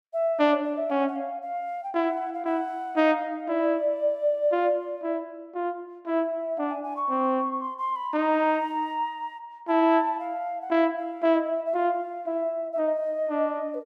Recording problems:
none

